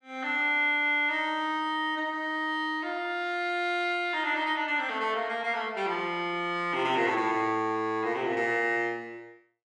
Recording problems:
none

